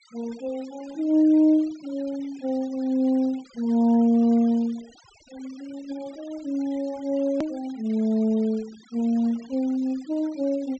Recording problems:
low-pass filter; nothing above 8 kHz
noise reduction artefacts; signal-to-artefact ratio 26 dB
hard cut with a click; at 7.5 s

